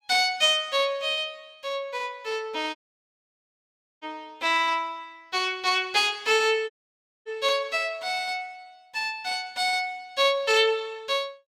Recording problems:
dropout; at 3 s for 1.5 s and at 6.5 s for 0.5 s

